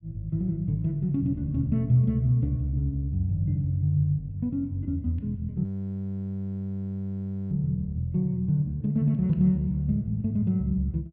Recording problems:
frozen audio; at 5.5 s for 2 s

